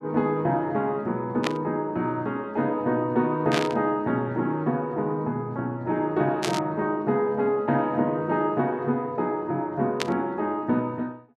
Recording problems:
burst of static; 4 times, first at 1.5 s; peak +2 dB vs average level

